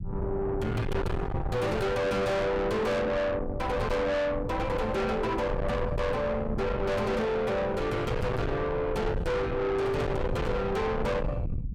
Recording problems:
distorted audio; soft clipping, signal-to-distortion ratio 6 dB
low-frequency rumble; below 470 Hz, SNR 6 dB

